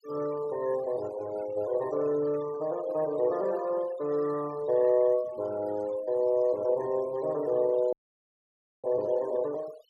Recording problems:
denoising artefacts; signal-to-artefact ratio 21 dB
audio cutting out; at 8 s for 1 s

